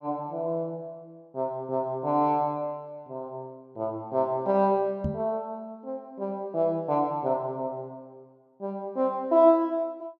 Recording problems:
microphone thump; at 5 s; peak +1 dB vs average level

